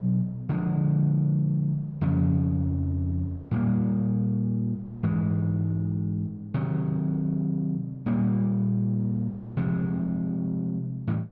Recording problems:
wind noise; below 450 Hz, SNR 26 dB

